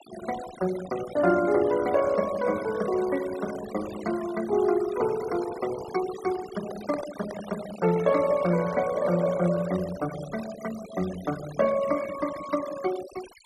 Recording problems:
denoising artefacts; signal-to-artefact ratio 15 dB
microphone handling noise; from 6.5 to 10 s; peak -5 dB vs average level

